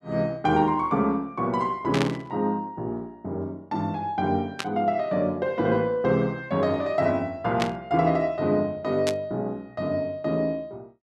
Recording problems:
burst of static; 4 times, first at 2 s; peak +1 dB vs average level

